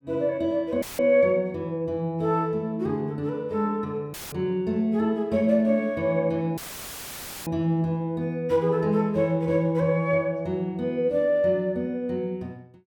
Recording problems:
audio cutting out; at 1 s, at 4 s and at 6.5 s for 1 s; filled with static

